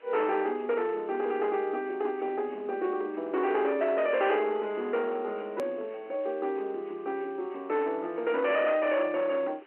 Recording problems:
phone line; 260 Hz to 3.1 kHz, G.711
distortion; hard clipping, signal-to-distortion ratio 12 dB
hiss; SNR 28 dB
edit click; at 5.5 s

